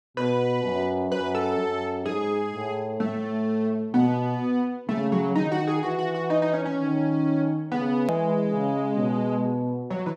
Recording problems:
hard cut with a click; at 8 s

